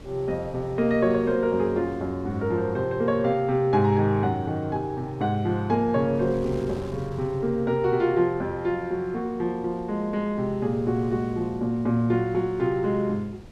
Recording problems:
wind noise; below 360 Hz, SNR 20 dB

